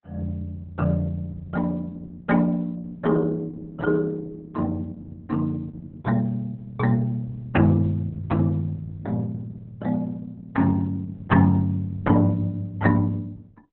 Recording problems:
lossy compression; Opus, log-spectral distance 2 dB, nothing above 3.6 kHz

